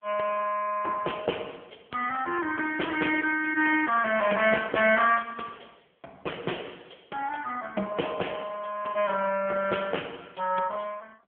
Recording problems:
telephone audio; 390 Hz to 3.2 kHz, AMR-NB

